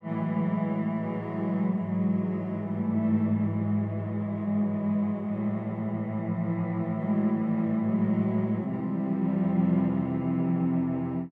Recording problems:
none

